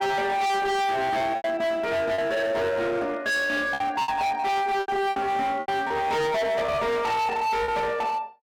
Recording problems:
distorted audio; hard clipping, signal-to-distortion ratio 6 dB
lost packets; 7% of the sound replaced, filled with repeated pitch periods

